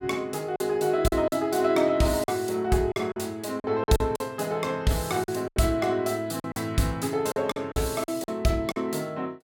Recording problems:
lost packets; 9% of the sound replaced, filled with silence

